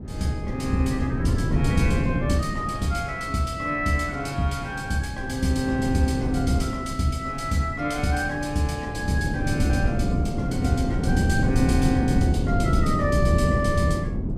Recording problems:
wind noise; below 230 Hz, SNR 1 dB

